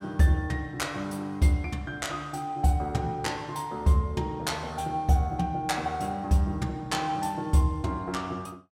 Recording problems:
none

